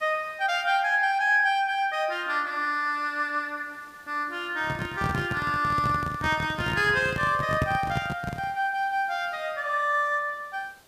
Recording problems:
hiss; slope -3 dB per octave, SNR 29 dB
microphone handling noise; from 4.5 to 8.5 s; peak +3 dB vs average level

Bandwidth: 15 kHz